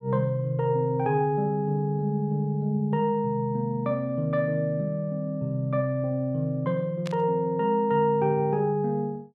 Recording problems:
static burst; at 7 s; peak -8 dB vs average level

